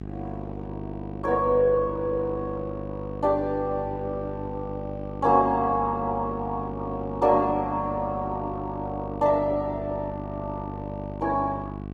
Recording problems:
codec artefacts; Opus, then Opus, log-spectral distance 2 dB
electrical hum; 50 Hz, harmonics up to 1.1 kHz, SNR 10 dB

